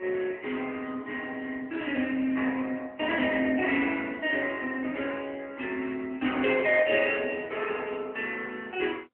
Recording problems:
phone line; 220 Hz to 3.3 kHz, AMR-NB

